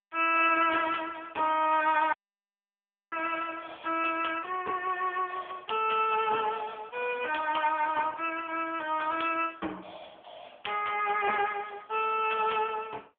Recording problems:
telephone audio; 280 Hz to 3.3 kHz, AMR-NB
audio cutting out; at 2 s for 1 s

